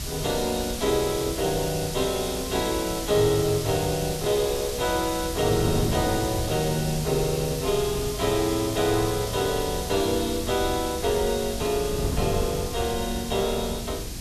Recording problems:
hiss; slope +2 dB per octave, SNR 8 dB
rumble; below 130 Hz, SNR 13 dB
wind noise; below 260 Hz, SNR 12 dB

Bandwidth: 13.5 kHz